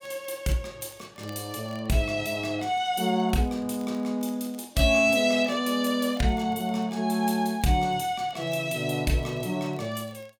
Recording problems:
crackle; vinyl, SNR 30 dB

